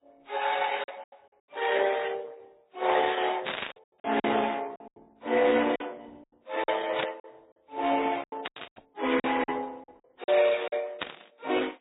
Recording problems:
low-pass filter; nothing above 3.8 kHz
lossy codec; Opus, then MP3, log-spectral distance 6 dB
packet loss; 9% of the sound replaced, filled with silence
static burst; 4 times, first at 3.5 s; peak +2 dB vs average level

